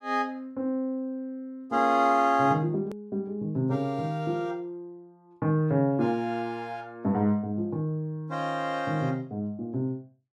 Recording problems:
edit click; at 3 s

